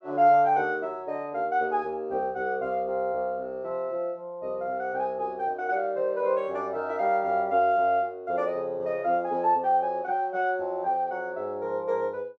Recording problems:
none

